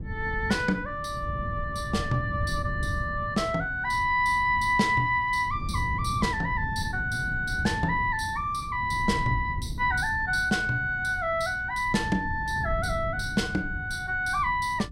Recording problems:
wind on the microphone; below 150 Hz, SNR 9 dB

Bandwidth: 16 kHz